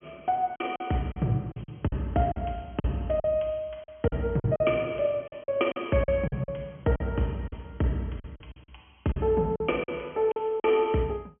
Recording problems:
treble missing; nothing above 3.2 kHz
packet loss; 11% of the sound replaced, filled with silence

